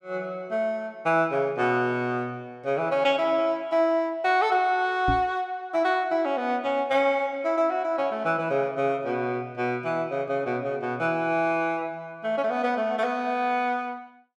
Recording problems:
microphone thump; at 5 s; peak +1 dB vs average level

